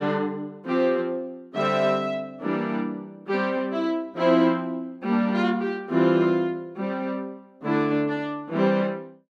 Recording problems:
none

